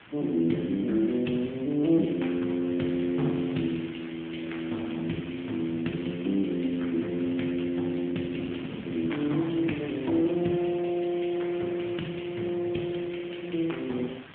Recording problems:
telephone audio; 110 Hz to 3.4 kHz, AMR-NB
background hiss; SNR 19 dB
wind noise; below 370 Hz, SNR 19 dB
crackling; from 3.5 to 5.5 s and from 7 to 10 s; loose cable, SNR 28 dB

